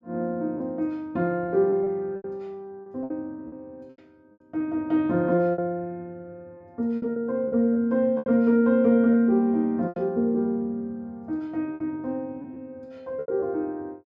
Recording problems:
packet loss; 7% of the sound replaced, filled with repeated pitch periods

